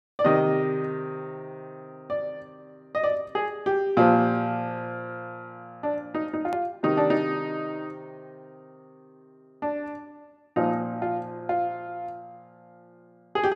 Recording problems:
click at an edit; at 6.5 s

